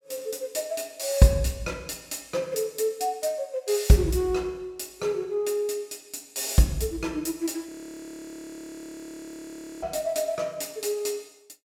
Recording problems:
frozen audio; at 7.5 s for 2 s

